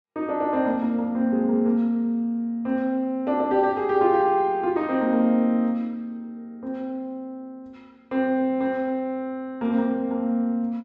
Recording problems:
low-pass filter; nothing above 8 kHz

